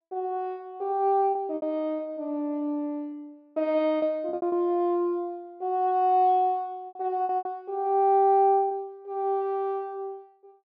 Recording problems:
lost packets; 6% of the sound replaced, filled with repeated pitch periods

